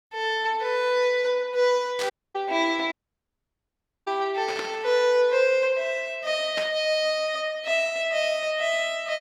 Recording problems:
burst of static; at 2 s, at 4.5 s and at 6.5 s; peak -4 dB vs average level
audio cutting out; at 2 s and at 3 s for 1 s

